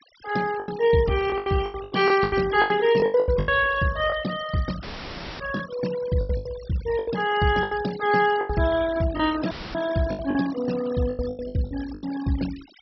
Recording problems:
treble missing; nothing above 5.7 kHz
denoising artefacts; signal-to-artefact ratio 15 dB
lost packets; 14% of the sound replaced, filled with the last packet
dropout; at 5 s for 0.5 s and at 9.5 s; filled with static

